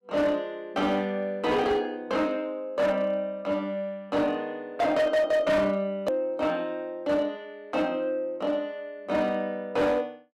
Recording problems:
distorted audio; hard clipping, signal-to-distortion ratio 10 dB
edit click; at 6 s

